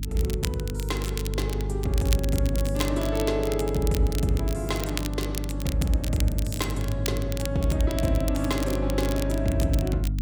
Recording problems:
electrical hum; 50 Hz, harmonics up to 300 Hz, SNR 3 dB
crackling; vinyl, SNR 10 dB

